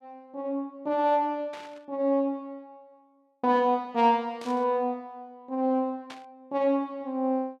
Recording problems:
burst of static; at 1.5 s, at 4.5 s and at 6 s; peak -11 dB vs average level

